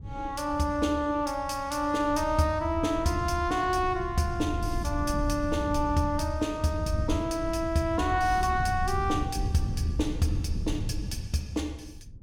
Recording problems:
wind on the microphone; below 110 Hz, SNR 7 dB

